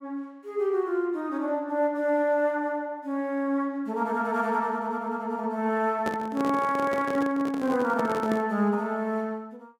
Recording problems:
microphone handling noise; from 6 to 8.5 s; peak -1 dB vs average level

